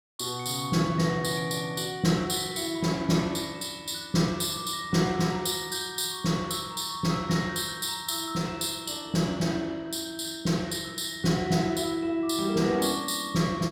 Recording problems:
none

